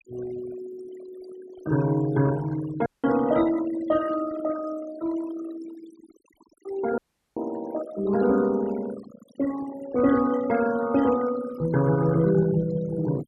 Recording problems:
denoising artefacts; signal-to-artefact ratio 15 dB
audio cutting out; at 3 s and at 7 s

